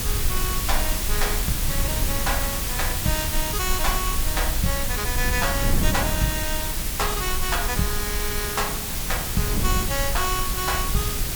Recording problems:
background hiss; slope -1 dB per octave, SNR -2 dB
rumble; below 54 Hz, strongest tone 18 Hz, SNR 5 dB
wind on the microphone; below 140 Hz, SNR 6 dB

